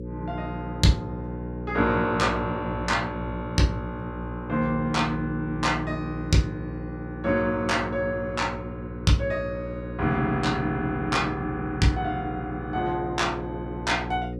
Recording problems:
electrical hum; 60 Hz, harmonics up to 540 Hz, SNR 8 dB

